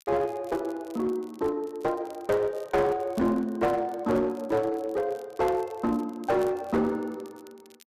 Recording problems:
distorted audio; hard clipping, uneven, signal-to-distortion ratio 11 dB
crackle; vinyl, SNR 27 dB

